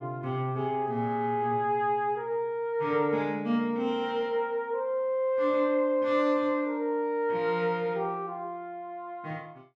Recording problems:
none

